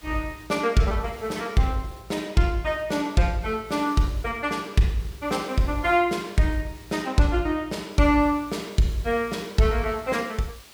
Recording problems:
hiss; slope 0 dB per octave, SNR 24 dB

